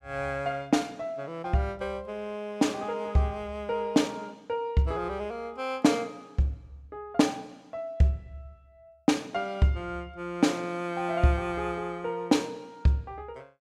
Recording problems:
none

